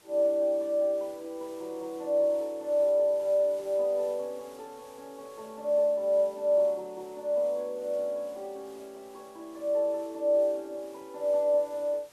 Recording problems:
hiss; slope -2 dB per octave, SNR 27 dB

